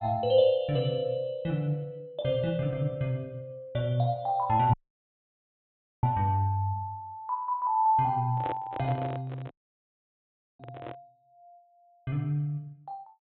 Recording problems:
treble cut off; nothing above 3.8 kHz
dropout; at 4.5 s for 1.5 s and at 9.5 s for 1 s
handling noise; from 8.5 to 11 s; peak -4 dB vs average level

